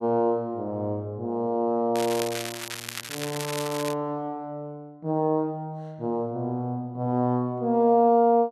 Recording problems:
crackle; from 2 to 4 s; loose cable, SNR 8 dB

